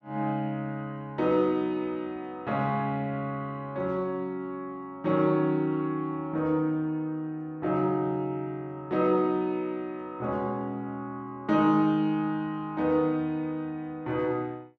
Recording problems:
none

